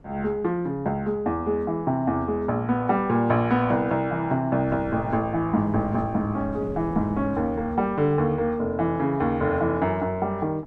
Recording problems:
wind on the microphone; below 290 Hz, SNR 18 dB

